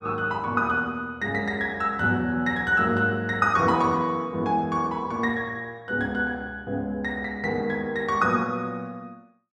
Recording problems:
none

